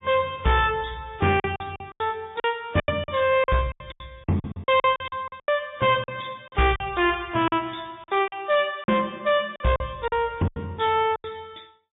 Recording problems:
treble missing; nothing above 3.2 kHz
codec artefacts; MP3, log-spectral distance 5 dB
distorted audio; soft clipping, signal-to-distortion ratio 10 dB
packet loss; 12% of the sound replaced, filled with silence

